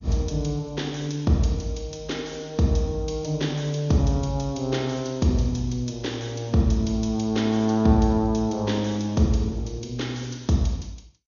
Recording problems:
lossy codec; MP2, log-spectral distance 4 dB, nothing above 6.7 kHz

